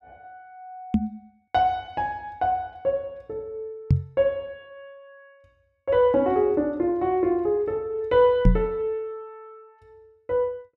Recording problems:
knock on the microphone; at 1 s, at 4 s and at 8.5 s; peak +9 dB vs average level

